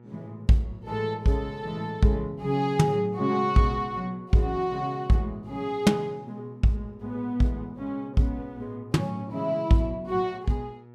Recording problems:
electrical hum; 60 Hz, harmonics up to 1.3 kHz, SNR 23 dB

